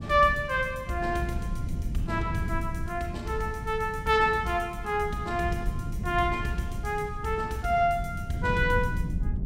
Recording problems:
low-frequency rumble; below 150 Hz, SNR 7 dB

